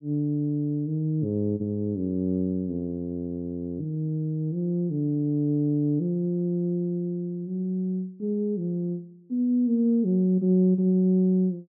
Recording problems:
none

